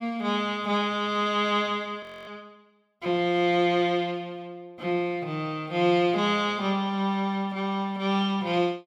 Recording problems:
audio freezing; at 2 s

